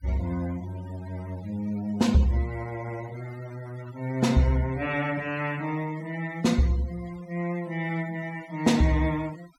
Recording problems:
denoising artefacts; signal-to-artefact ratio 21 dB

